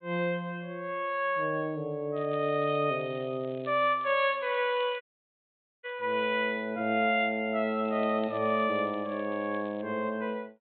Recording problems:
low-pass filter; nothing above 4 kHz
crackling; from 2 to 6 s and from 8 to 10 s; loose cable, SNR 27 dB
audio cutting out; at 5 s for 1 s

